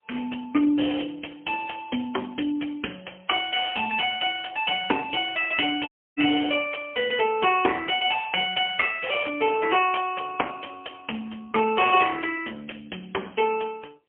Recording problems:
phone line; 240 Hz to 3.3 kHz, AMR-NB, then MP3
dropout; at 6 s

